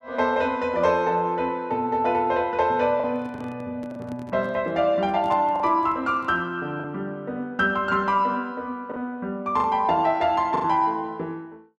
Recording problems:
packet loss; 3% of the sound replaced, filled with the last packet
handling noise; from 3 to 6.5 s; peak -11 dB vs average level

